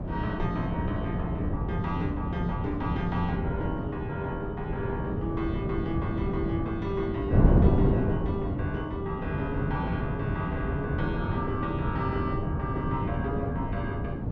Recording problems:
wind noise; below 260 Hz, SNR -3 dB

